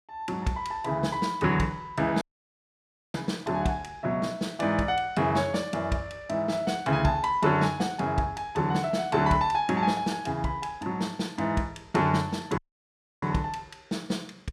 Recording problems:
dropout; at 2 s for 1 s and at 13 s for 0.5 s

